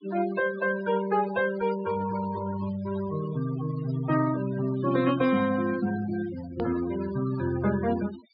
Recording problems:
low-pass filter; nothing above 5 kHz
noise reduction artefacts; signal-to-artefact ratio 13 dB
edit click; at 6.5 s

